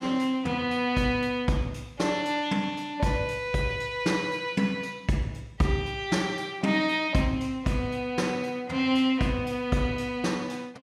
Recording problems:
none

